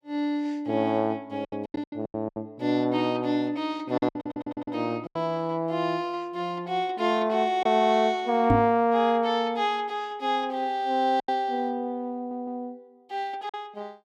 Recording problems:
packet loss; 6% of the sound replaced, filled with silence
stutter; at 4 s and at 12 s
knock on the microphone; at 8.5 s; peak +7 dB vs average level

